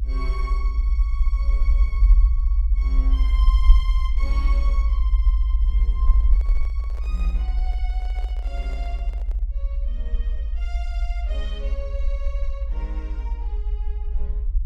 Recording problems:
rumble; below 54 Hz, SNR -16 dB
microphone handling noise; from 6 to 9.5 s; peak -3 dB vs average level

